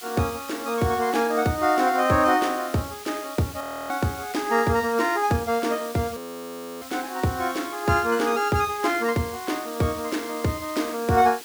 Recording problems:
background hiss; slope +1 dB per octave, SNR 15 dB
audio freezing; at 3.5 s and at 6 s for 0.5 s

